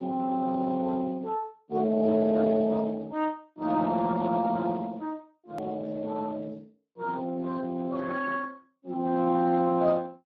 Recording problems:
lossy codec; Speex, then Speex, log-spectral distance 3 dB
click at an edit; at 5.5 s

